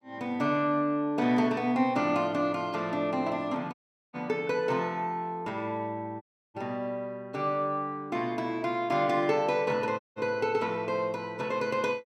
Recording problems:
dropout; at 3.5 s, at 6 s and at 10 s

